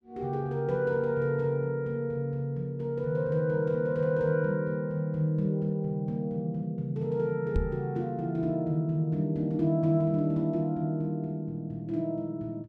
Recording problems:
knock on the microphone; at 7.5 s; peak +4 dB vs average level

